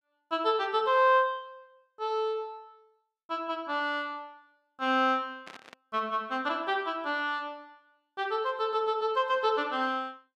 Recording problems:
burst of static; at 5.5 s; peak -13 dB vs average level

